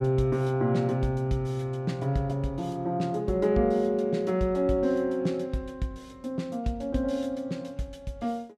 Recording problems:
none

